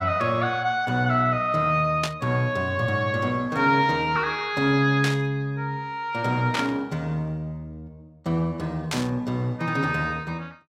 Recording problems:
burst of static; 4 times, first at 2 s; peak +1 dB vs average level

